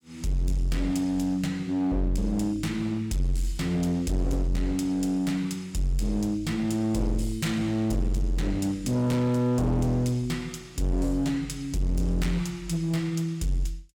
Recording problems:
distortion; hard clipping, signal-to-distortion ratio 7 dB

